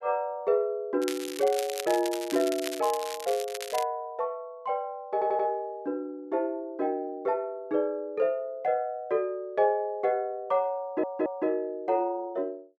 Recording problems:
crackling; from 1 to 4 s; loose cable, SNR 9 dB
audio stuttering; at 5 s and at 11 s

